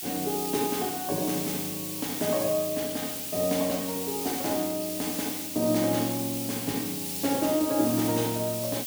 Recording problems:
background hiss; SNR 4 dB

